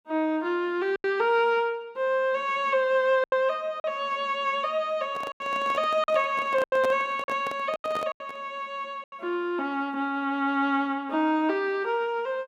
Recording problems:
packet loss; 5% of the sound replaced, filled with silence
handling noise; from 5 to 8.5 s; peak -2 dB vs average level

